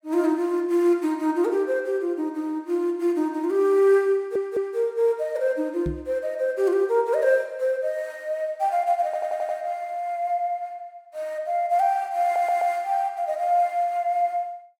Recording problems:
stutter; at 4 s, at 9 s and at 12 s
microphone bump; at 6 s; peak -3 dB vs average level

